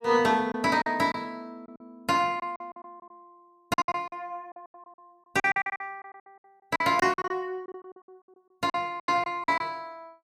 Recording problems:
packet loss; 16% of the sound replaced, filled with silence

